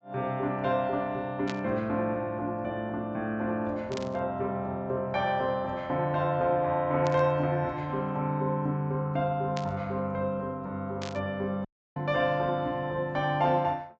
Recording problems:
treble cut off; nothing above 8 kHz
static burst; 5 times, first at 1.5 s; peak -4 dB vs average level
dropout; at 12 s

